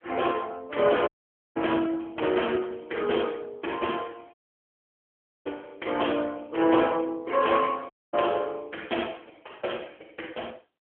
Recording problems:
phone line; 280 Hz to 3.3 kHz, AMR-NB
dropout; at 1 s, at 4.5 s for 1 s and at 8 s

